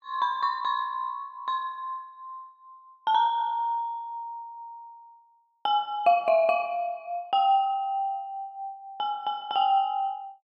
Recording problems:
none

